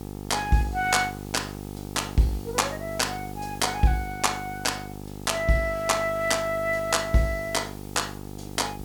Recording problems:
electrical hum; 50 Hz, harmonics up to 1.3 kHz, SNR 12 dB
hiss; slope +1 dB per octave, SNR 21 dB

